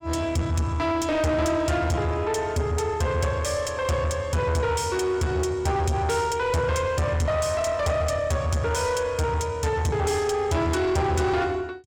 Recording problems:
distortion; soft clipping, signal-to-distortion ratio 7 dB

